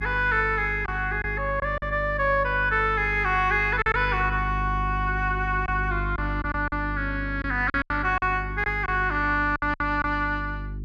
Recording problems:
mains hum; 50 Hz, harmonics up to 400 Hz, SNR 8 dB
lost packets; 6% of the sound replaced, filled with silence

